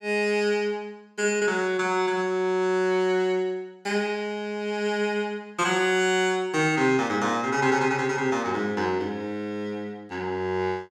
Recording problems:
none

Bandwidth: 16.5 kHz